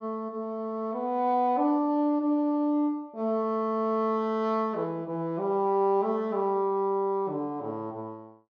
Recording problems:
none

